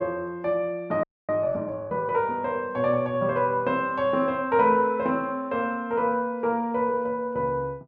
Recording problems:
frozen audio; at 1 s

